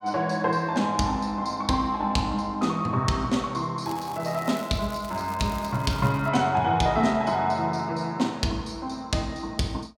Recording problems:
crackle; from 4 to 6.5 s; loose cable, SNR 20 dB

